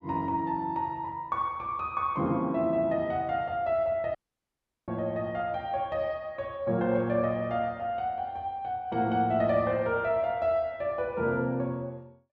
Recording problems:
audio cutting out; at 4 s for 0.5 s

